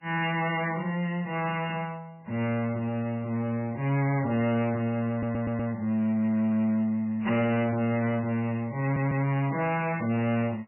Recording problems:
lossy compression; MP3, log-spectral distance 3 dB, nothing above 2.8 kHz
distortion; soft clipping, signal-to-distortion ratio 11 dB
audio stuttering; at 5 s and at 9 s

